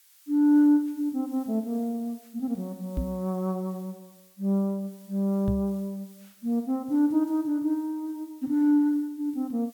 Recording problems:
hiss; slope +5 dB per octave, SNR 27 dB
knock on the microphone; at 3 s and at 5.5 s; peak +1 dB vs average level

